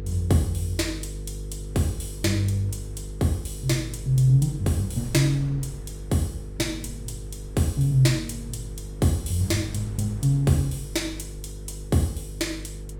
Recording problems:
electrical hum; 50 Hz, harmonics up to 500 Hz, SNR 12 dB
wind on the microphone; below 260 Hz, SNR 23 dB

